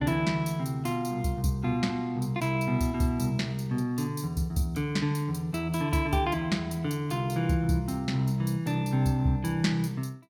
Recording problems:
none

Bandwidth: 18 kHz